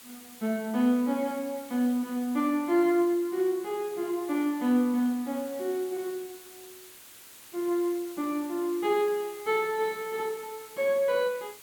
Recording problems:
background hiss; slope 0 dB per octave, SNR 19 dB

